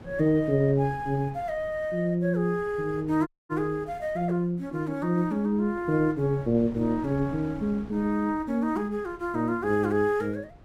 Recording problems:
wind noise; below 350 Hz, SNR 21 dB
dropout; at 3.5 s

